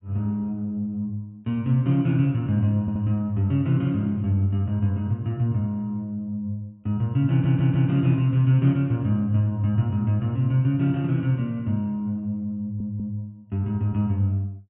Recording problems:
treble cut off; nothing above 4 kHz
audio stuttering; at 3 s, at 7.5 s and at 13 s

